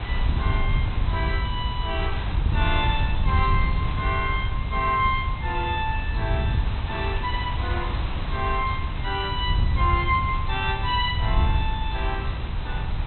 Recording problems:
treble cut off; nothing above 4 kHz
hiss; SNR 10 dB
wind on the microphone; below 100 Hz, SNR 0 dB
crackle; vinyl, SNR 27 dB

